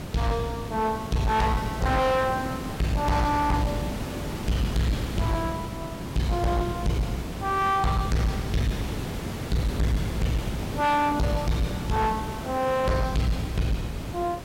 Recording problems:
distortion; hard clipping, uneven, signal-to-distortion ratio 8 dB
hiss; slope -6 dB per octave, SNR 8 dB

